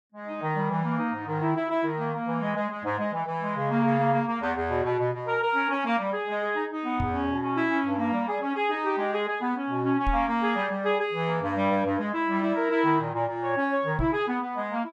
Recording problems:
microphone thump; at 7 s, at 10 s and at 14 s; peak +1 dB vs average level

